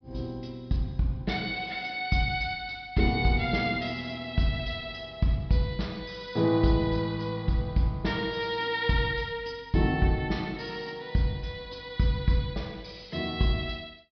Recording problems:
low-pass filter; nothing above 5.5 kHz

